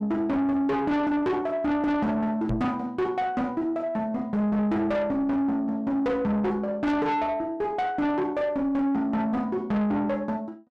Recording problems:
distortion; soft clipping, signal-to-distortion ratio 8 dB
microphone bump; at 2.5 s; peak +1 dB vs average level

